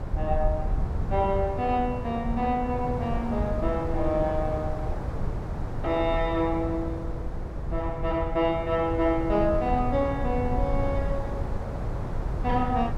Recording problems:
low-frequency rumble; below 98 Hz, SNR 8 dB
wind noise; below 390 Hz, SNR 7 dB

